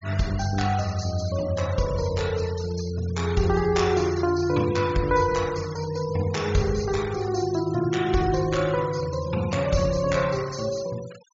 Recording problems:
treble cut off; nothing above 7.4 kHz
denoising artefacts; signal-to-artefact ratio 17 dB

